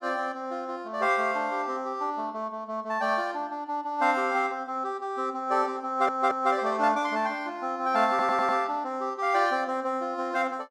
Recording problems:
audio stuttering; at 6 s and at 8 s

